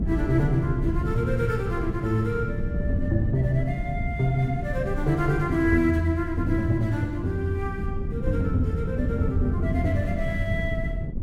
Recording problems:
wind noise; below 160 Hz, SNR 4 dB

